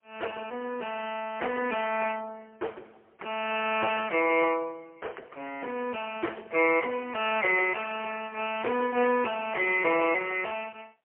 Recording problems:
phone line; 280 Hz to 3.1 kHz, AMR-NB, then MP3

